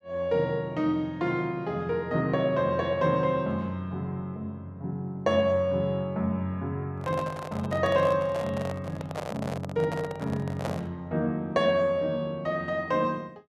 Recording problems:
microphone handling noise; from 7 to 11 s; peak 0 dB vs average level

